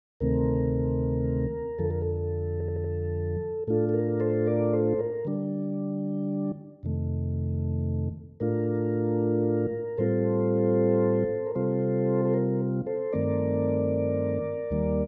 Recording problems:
audio stuttering; at 2.5 s

